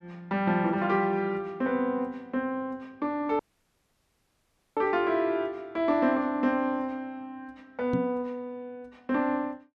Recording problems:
audio cutting out; at 3.5 s for 1.5 s
microphone bump; at 8 s; peak +2 dB vs average level

